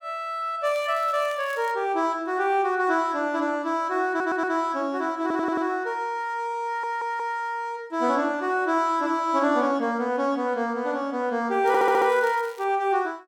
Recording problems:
crackling; from 0.5 to 1.5 s and at 12 s; loose cable, SNR 23 dB
audio stuttering; 4 times, first at 4 s

